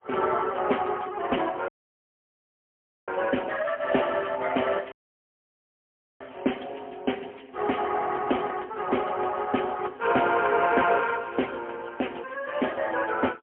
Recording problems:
telephone audio; 260 Hz to 3.2 kHz, AMR-NB, then MP3
audio cutting out; at 1.5 s for 1.5 s and at 5 s for 1.5 s

